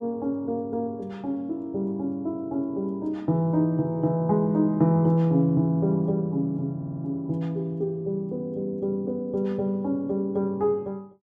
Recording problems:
audio stuttering; at 7 s

